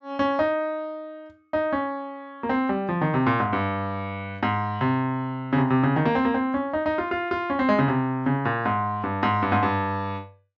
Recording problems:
treble missing; nothing above 8 kHz

